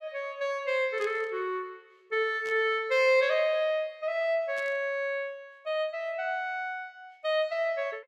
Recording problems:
burst of static; at 1 s, at 2.5 s and at 4.5 s; peak -13 dB vs average level

